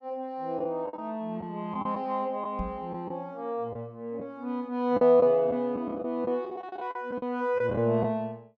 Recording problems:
lost packets; 8% of the sound replaced, filled with the last packet
microphone thump; at 2.5 s; peak -2 dB vs average level

